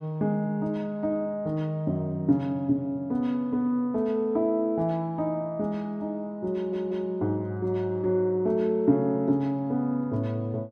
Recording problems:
audio stuttering; at 6.5 s

